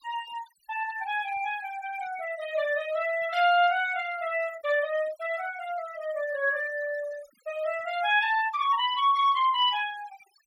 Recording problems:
denoising artefacts; signal-to-artefact ratio 17 dB

